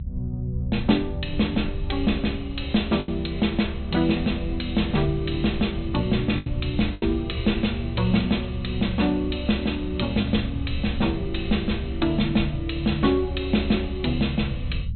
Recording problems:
treble missing; nothing above 4.1 kHz
rumble; below 110 Hz, SNR 7 dB
packet loss; 1.8% of the sound replaced, filled with the last packet

